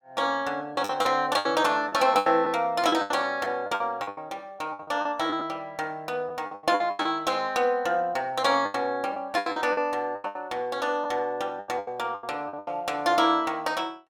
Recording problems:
lost packets; 13% of the sound replaced, filled with the last packet

